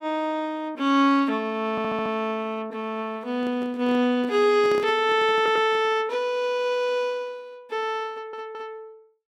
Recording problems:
stutter; at 1.5 s, at 5.5 s and at 8 s
microphone handling noise; from 3.5 to 6 s; peak -6 dB vs average level

